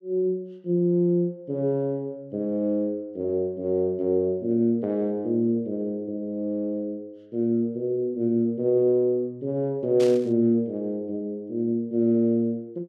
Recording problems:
static burst; at 10 s; peak -8 dB vs average level

